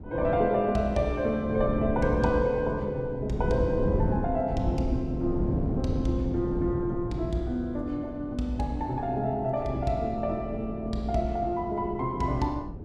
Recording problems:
wind on the microphone; below 260 Hz, SNR 6 dB

